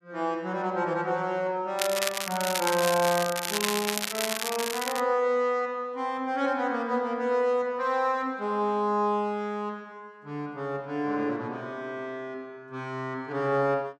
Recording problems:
crackling; from 2 to 5 s; loose cable, SNR 2 dB

